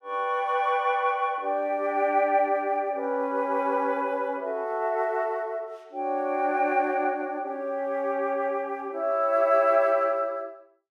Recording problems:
none

